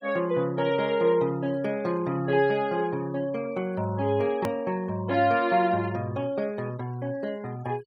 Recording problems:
noise reduction artefacts; signal-to-artefact ratio 24 dB
hard cut with a click; at 4.5 s

